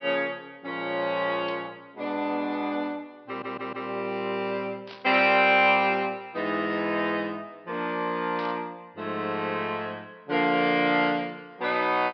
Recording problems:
treble missing; nothing above 5.5 kHz
burst of static; at 1.5 s, at 5 s and at 8.5 s; peak -12 dB vs average level
audio stuttering; at 3.5 s

